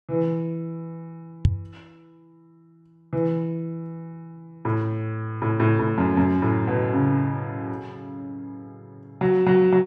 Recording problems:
microphone bump; at 1.5 s; peak +8 dB vs average level

